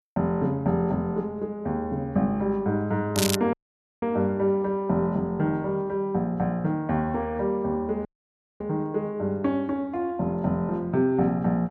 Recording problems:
crackle; at 3 s; loose cable, SNR 3 dB
audio cutting out; at 3.5 s and at 8 s for 0.5 s

